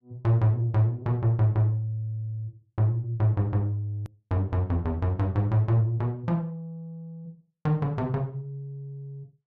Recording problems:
edit click; at 4 s

